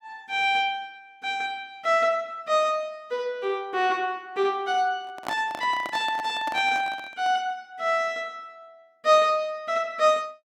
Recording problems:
handling noise; from 5 to 7.5 s; peak -2 dB vs average level

